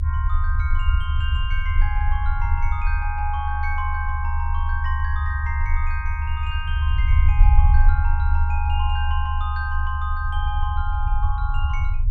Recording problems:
rumble; below 76 Hz, strongest tone 24 Hz, SNR -7 dB

